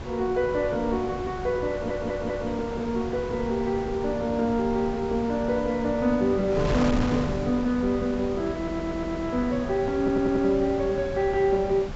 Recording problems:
low-pass filter; nothing above 7.7 kHz
wind noise; below 640 Hz, SNR 9 dB
stutter; at 1.5 s, at 8.5 s and at 10 s

